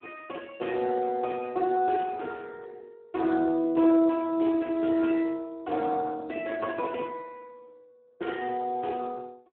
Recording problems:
phone line; 260 Hz to 2.8 kHz, Speex

